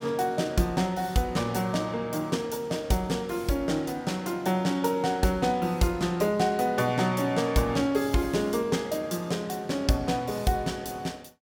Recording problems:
none

